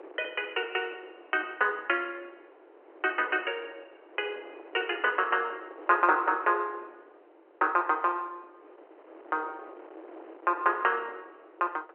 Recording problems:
telephone audio; 280 Hz to 3.2 kHz, G.711
wind on the microphone; below 800 Hz, SNR 20 dB

